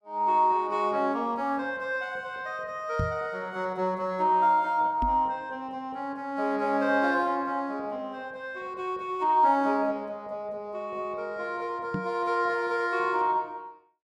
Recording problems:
knock on the microphone; at 3 s, at 5 s and at 12 s; peak +1 dB vs average level

